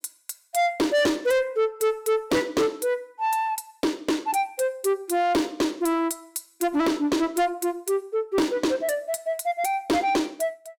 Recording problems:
distorted audio; soft clipping, signal-to-distortion ratio 8 dB

